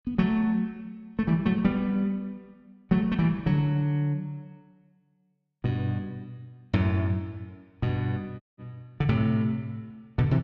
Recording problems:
audio cutting out; at 8.5 s

